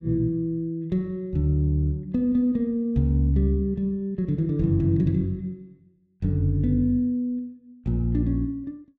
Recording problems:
none

